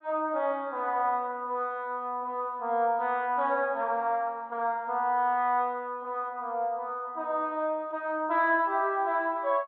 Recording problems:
none

